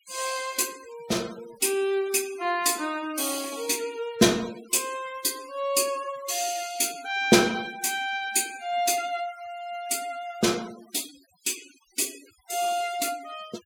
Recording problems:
denoising artefacts; signal-to-artefact ratio 19 dB

